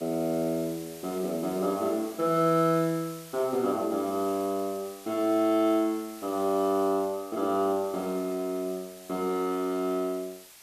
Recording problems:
background hiss; slope +1 dB per octave, SNR 18 dB

